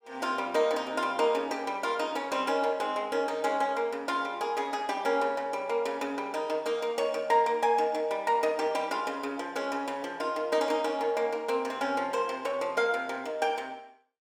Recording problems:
none

